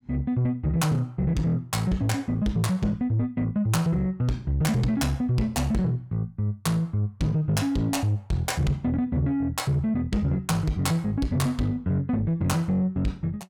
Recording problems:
distortion; soft clipping, signal-to-distortion ratio 11 dB

